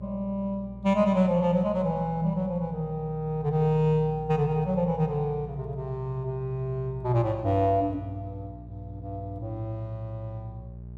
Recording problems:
hum; 60 Hz, harmonics up to 600 Hz, SNR 15 dB

